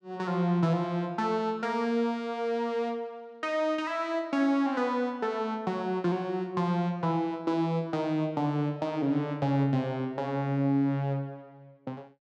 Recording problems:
none

